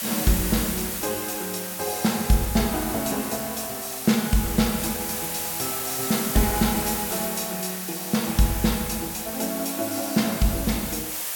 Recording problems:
hiss; SNR 3 dB

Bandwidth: 17.5 kHz